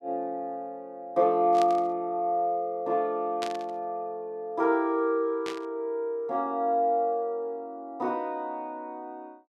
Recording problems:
burst of static; at 1.5 s, at 3.5 s and at 5.5 s; peak -3 dB vs average level

